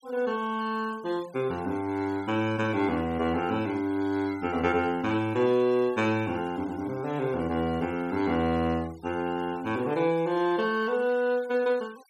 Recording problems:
noise reduction artefacts; signal-to-artefact ratio 23 dB

